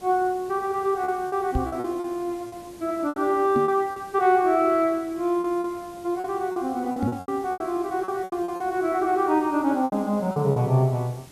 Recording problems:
hiss; SNR 23 dB
lost packets; 10% of the sound replaced, filled with repeated pitch periods
knock on the microphone; at 1.5 s, at 3.5 s and at 7 s; peak +2 dB vs average level

